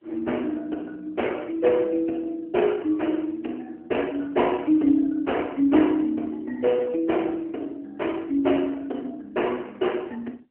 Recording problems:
telephone audio; 220 Hz to 3.1 kHz, AMR-NB

